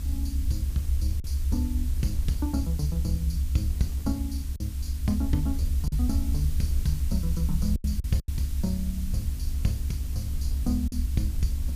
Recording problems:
hum; 50 Hz, harmonics up to 300 Hz, SNR 9 dB
hiss; slope +2 dB per octave, SNR 13 dB
low-frequency rumble; below 72 Hz, strongest tone 70 Hz, SNR -3 dB
wind on the microphone; below 170 Hz, SNR 17 dB
packet loss; 3% of the sound replaced, filled with silence

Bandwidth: 15 kHz